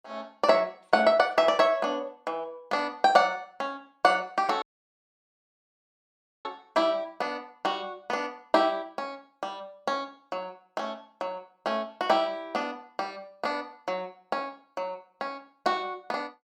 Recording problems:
dropout; at 4.5 s for 2 s

